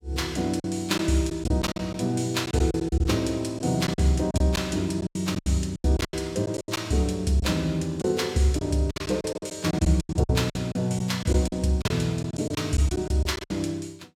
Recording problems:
packet loss; 13% of the sound replaced, filled with silence

